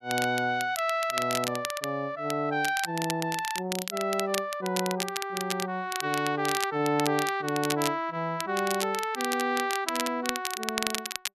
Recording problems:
crackle; vinyl, SNR 6 dB

